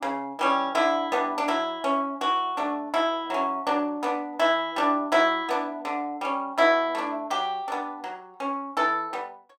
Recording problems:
none

